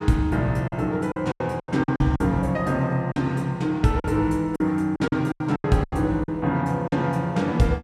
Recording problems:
packet loss; 11% of the sound replaced, filled with silence

